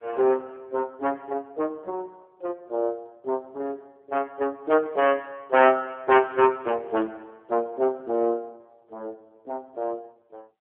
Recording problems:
telephone audio; 280 Hz to 3.3 kHz, AMR-NB

